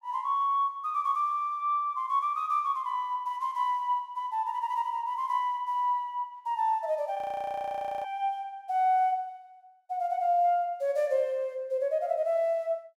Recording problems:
frozen audio; at 7 s for 1 s

